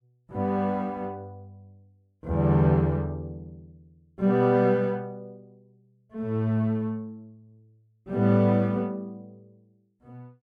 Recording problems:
none

